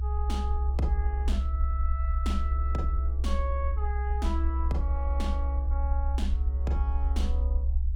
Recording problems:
rumble; below 68 Hz, strongest tone 66 Hz, SNR -8 dB

